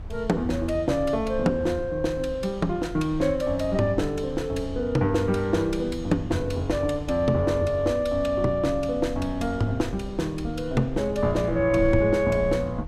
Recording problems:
wind noise; below 92 Hz, SNR 13 dB

